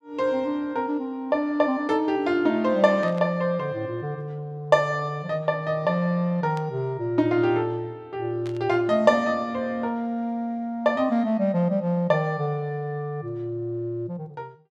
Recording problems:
burst of static; at 3 s, at 6.5 s and at 8.5 s; peak -15 dB vs average level

